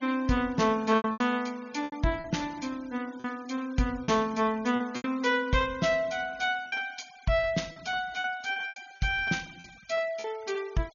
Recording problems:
treble missing; nothing above 6.8 kHz
noise reduction artefacts; signal-to-artefact ratio 23 dB
lost packets; 8% of the sound replaced, filled with repeated pitch periods

